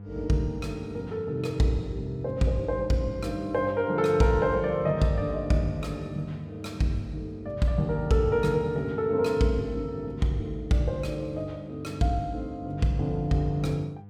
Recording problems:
hum; 50 Hz, harmonics up to 700 Hz, SNR 17 dB

